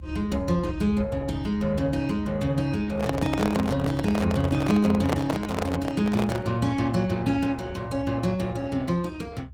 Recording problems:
lossy compression; Opus, log-spectral distance 3 dB, nothing above 19 kHz
rumble; below 110 Hz, strongest tone 70 Hz, SNR 11 dB
microphone handling noise; from 3 to 6.5 s; peak +3 dB vs average level

